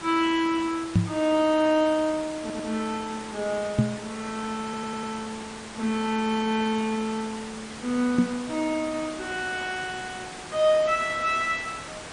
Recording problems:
lossy codec; MP3, log-spectral distance 7 dB, nothing above 9.2 kHz
hiss; slope -3 dB per octave, SNR 12 dB
knock on the microphone; at 1 s, at 4 s and at 8 s; peak +9 dB vs average level
audio stuttering; at 2.5 s and at 4.5 s

